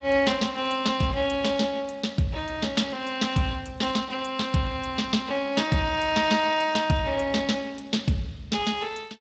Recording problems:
lossy codec; Speex, log-spectral distance 5 dB, nothing above 7.3 kHz

